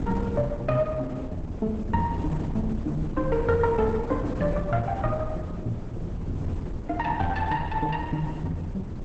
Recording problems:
lossy compression; Opus, log-spectral distance 2 dB, nothing above 7.6 kHz
wind on the microphone; below 220 Hz, SNR 6 dB

